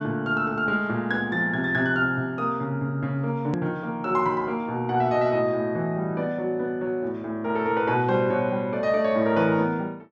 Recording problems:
treble cut off; nothing above 8 kHz
click at an edit; at 3.5 s

